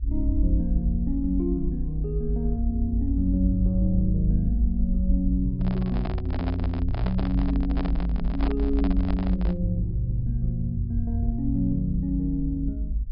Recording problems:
treble cut off; nothing above 5.5 kHz
rumble; below 56 Hz, strongest tone 54 Hz, SNR 1 dB
microphone handling noise; from 5.5 to 9.5 s; peak -3 dB vs average level

